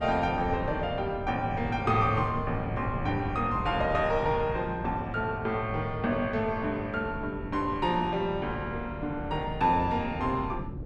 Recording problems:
wind noise; below 230 Hz, SNR 9 dB

